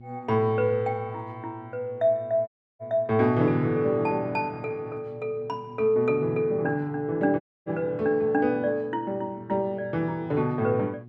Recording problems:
hum; 60 Hz, harmonics up to 480 Hz, SNR 20 dB
audio cutting out; at 2.5 s and at 7.5 s

